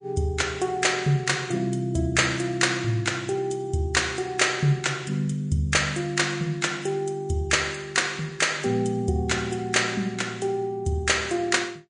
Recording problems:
lossy compression; MP3, log-spectral distance 3 dB, nothing above 9.2 kHz

